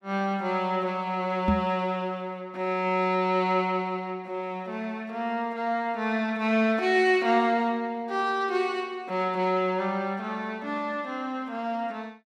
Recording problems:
microphone thump; at 1.5 s; peak +6 dB vs average level

